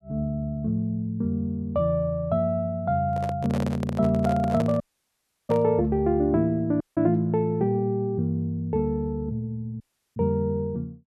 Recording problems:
microphone handling noise; from 3 to 5.5 s; peak -3 dB vs average level
audio cutting out; at 5 s for 0.5 s, at 7 s and at 10 s

